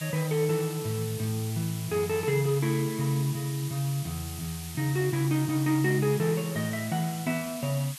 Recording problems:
hiss; slope +4 dB per octave, SNR 11 dB

